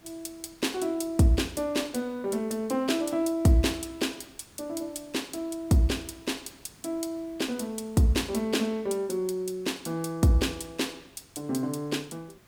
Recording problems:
hiss; slope -4 dB per octave, SNR 27 dB

